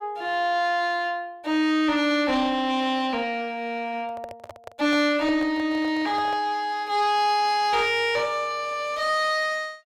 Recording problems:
distortion; soft clipping, signal-to-distortion ratio 11 dB
microphone handling noise; from 4 to 6.5 s; peak -7 dB vs average level

